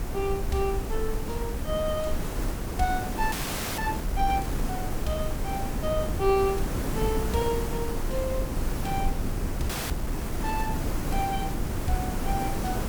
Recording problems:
background hiss; slope -6 dB per octave, SNR 3 dB
low-frequency rumble; below 52 Hz, strongest tone 20 Hz, SNR 5 dB
wind noise; below 180 Hz, SNR 7 dB
frozen audio; at 3.5 s and at 9.5 s

